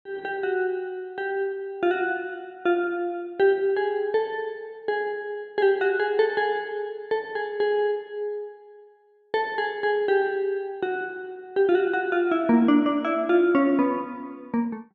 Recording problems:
none

